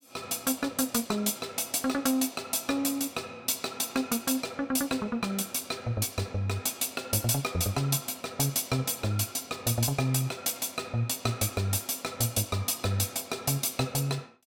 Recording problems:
none

